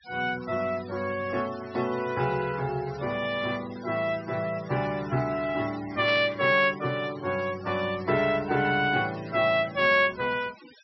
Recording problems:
treble cut off; nothing above 5.7 kHz
noise reduction artefacts; signal-to-artefact ratio 19 dB
static burst; at 6 s; peak -7 dB vs average level

